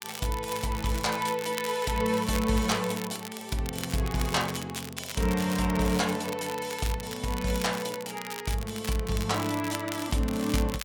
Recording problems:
crackling; vinyl, SNR 10 dB

